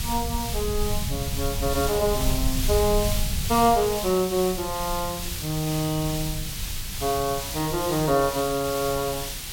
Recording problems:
background hiss; SNR 5 dB
rumble; below 96 Hz, SNR 8 dB

